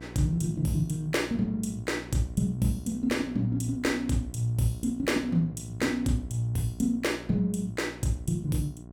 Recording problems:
hum; 60 Hz, harmonics up to 1 kHz, SNR 15 dB

